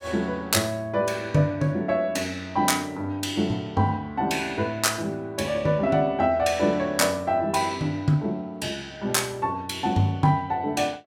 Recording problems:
none

